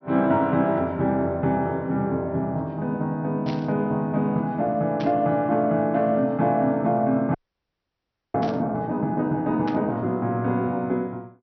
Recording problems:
treble missing; nothing above 5.9 kHz
burst of static; 4 times, first at 3.5 s; peak -9 dB vs average level
audio freezing; at 7.5 s for 1 s

